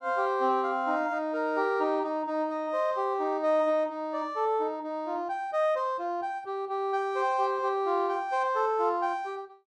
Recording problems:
none

